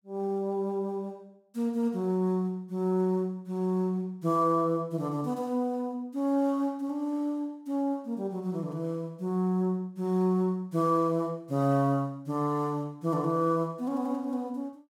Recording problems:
none

